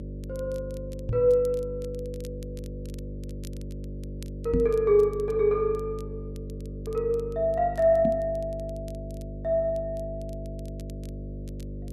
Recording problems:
hum; 50 Hz, harmonics up to 600 Hz, SNR 11 dB
crackle; vinyl, SNR 30 dB
microphone bump; at 1 s, at 4.5 s and at 8 s; peak +3 dB vs average level

